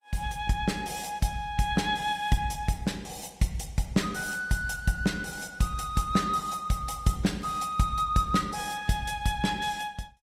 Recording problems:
lossy codec; Opus, log-spectral distance 4 dB, nothing above 18.9 kHz

